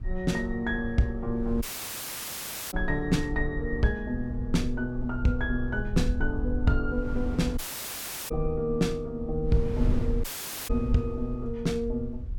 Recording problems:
low-frequency rumble; below 60 Hz, SNR 7 dB
wind noise; below 130 Hz, SNR 11 dB
dropout; at 1.5 s for 1 s, at 7.5 s for 0.5 s and at 10 s

